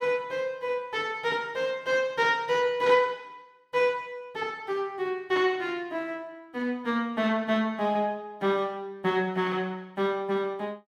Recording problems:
none

